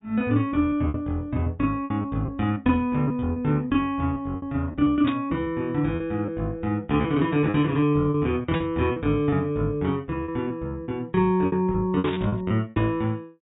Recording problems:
treble missing; nothing above 4 kHz
lost packets; 9% of the sound replaced, filled with repeated pitch periods
static burst; at 5 s, at 8.5 s and at 12 s; peak -4 dB vs average level

